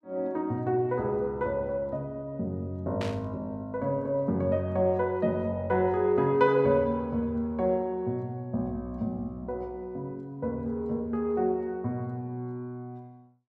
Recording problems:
static burst; at 3 s; peak -5 dB vs average level

